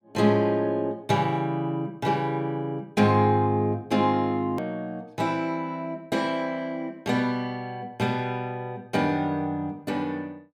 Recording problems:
click at an edit; at 4.5 s

